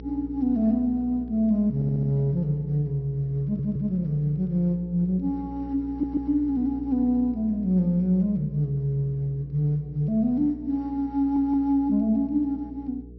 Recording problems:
treble cut off; nothing above 5.7 kHz
mains hum; 60 Hz, harmonics up to 480 Hz, SNR 17 dB
audio stuttering; 4 times, first at 2 s

